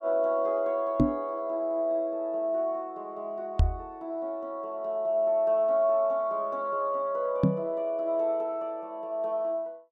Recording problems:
microphone bump; at 1 s, at 3.5 s and at 7.5 s; peak +9 dB vs average level

